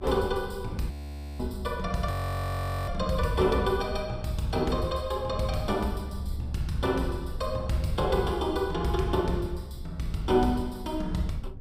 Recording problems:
rumble; below 74 Hz, SNR 9 dB
frozen audio; at 1 s and at 2 s for 1 s

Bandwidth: 15.5 kHz